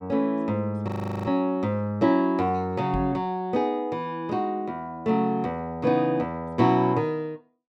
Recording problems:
audio freezing; at 1 s
microphone thump; at 3 s; peak +1 dB vs average level

